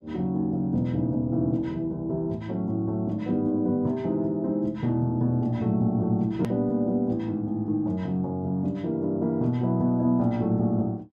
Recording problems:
edit click; at 6.5 s

